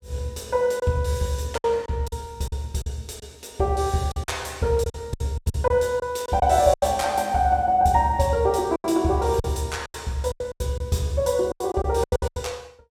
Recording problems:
lost packets; 11% of the sound replaced, filled with silence

